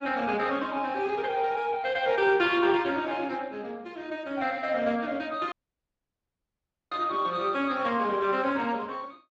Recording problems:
lossy codec; Speex, log-spectral distance 4 dB, nothing above 7.3 kHz
audio cutting out; at 5.5 s for 1.5 s

